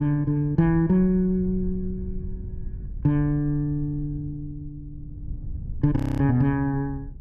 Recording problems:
rumble; below 90 Hz, SNR 14 dB
audio freezing; at 6 s

